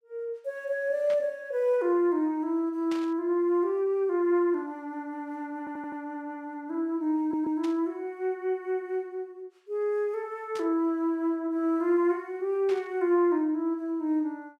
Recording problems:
burst of static; 5 times, first at 1 s; peak -9 dB vs average level
stutter; at 5.5 s and at 7 s

